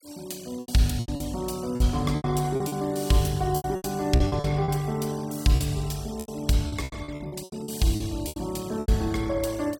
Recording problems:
noise reduction artefacts; signal-to-artefact ratio 22 dB
lost packets; 14% of the sound replaced, filled with repeated pitch periods

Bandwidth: 17.5 kHz